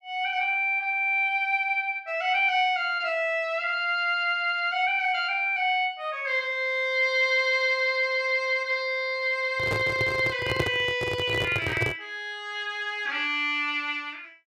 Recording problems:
microphone handling noise; from 9.5 to 12 s; peak +2 dB vs average level

